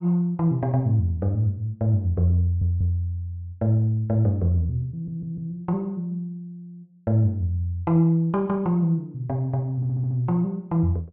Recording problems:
stutter; at 2.5 s, at 5 s and at 10 s

